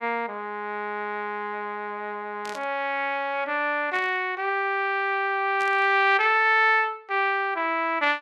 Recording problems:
burst of static; at 2.5 s, at 4 s and at 5.5 s; peak -11 dB vs average level

